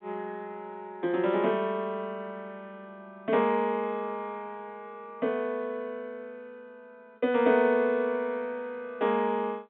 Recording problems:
phone line; 190 Hz to 3.7 kHz, G.711

